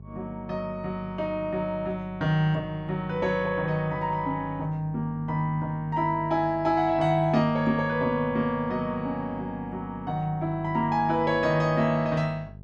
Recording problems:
electrical hum; 50 Hz, harmonics up to 600 Hz, SNR 17 dB

